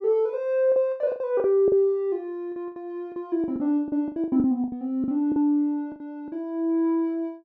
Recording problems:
packet loss; 14% of the sound replaced, filled with the last packet

